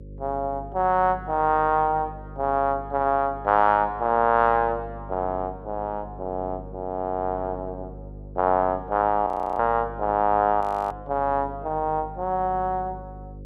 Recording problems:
electrical hum; 50 Hz, harmonics up to 550 Hz, SNR 17 dB
audio freezing; at 9.5 s and at 11 s

